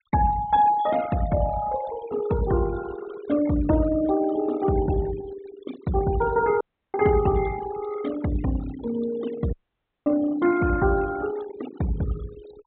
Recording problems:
treble cut off; nothing above 4 kHz
denoising artefacts; signal-to-artefact ratio 15 dB
dropout; at 6.5 s and at 9.5 s for 0.5 s

